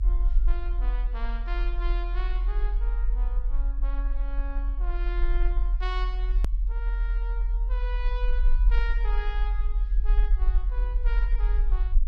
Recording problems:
rumble; below 42 Hz, strongest tone 42 Hz, SNR -12 dB
edit click; at 6.5 s

